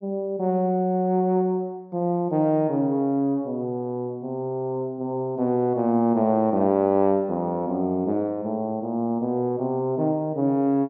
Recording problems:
treble cut off; nothing above 8 kHz

